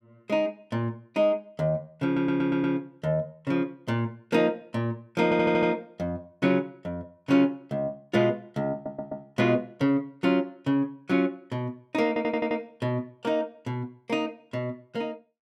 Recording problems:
stutter; 4 times, first at 2 s

